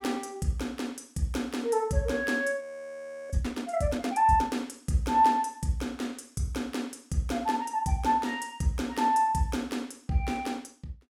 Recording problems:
audio freezing; at 2.5 s for 0.5 s

